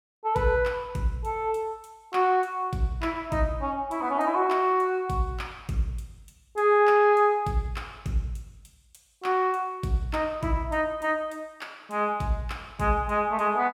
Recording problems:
none

